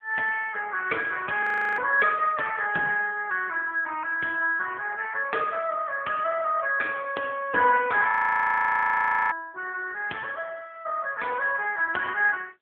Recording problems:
phone line; 410 Hz to 3.1 kHz, AMR-NB
frozen audio; at 1.5 s and at 8 s for 1 s

